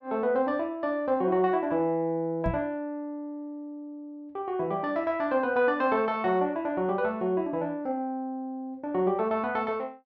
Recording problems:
microphone thump; at 2.5 s; peak 0 dB vs average level

